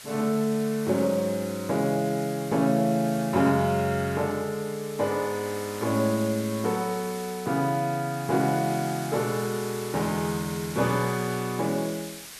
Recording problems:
hiss; slope +1 dB per octave, SNR 14 dB

